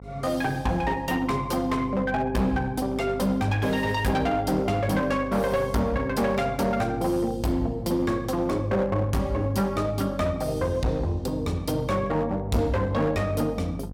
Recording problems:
distortion; hard clipping, uneven, signal-to-distortion ratio 10 dB
hum; 50 Hz, harmonics up to 750 Hz, SNR 13 dB

